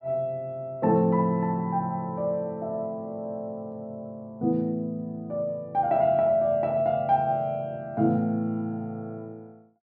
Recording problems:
none

